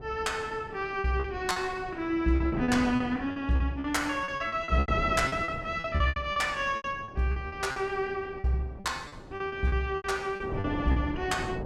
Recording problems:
wind on the microphone; below 470 Hz, SNR 11 dB
packet loss; 14% of the sound replaced, filled with repeated pitch periods

